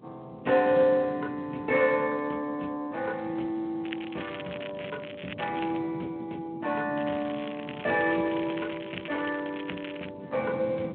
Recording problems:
telephone audio; 190 Hz to 3.5 kHz, Speex
wind on the microphone; below 320 Hz, SNR 16 dB
crackle; from 4 to 6 s and from 7 to 10 s; loose cable, SNR 13 dB

